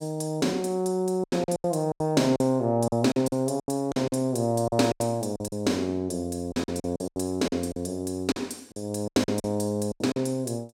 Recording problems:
packet loss; 14% of the sound replaced, filled with silence

